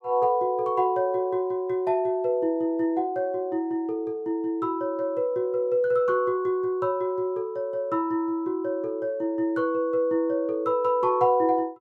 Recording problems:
none

